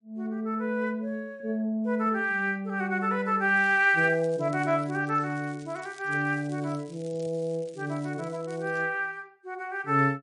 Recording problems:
codec artefacts; MP3, log-spectral distance 2 dB, nothing above 9 kHz
crackling; from 3.5 to 9 s; loose cable, SNR 26 dB

